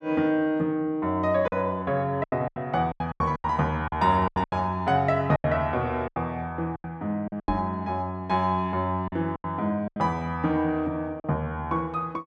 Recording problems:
packet loss; 10% of the sound replaced, filled with silence
microphone bump; at 7.5 s; peak +1 dB vs average level

